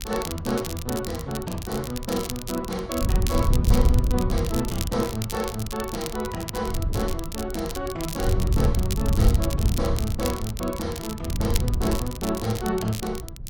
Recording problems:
wind noise; below 100 Hz, SNR -1 dB
crackle; vinyl, SNR 8 dB

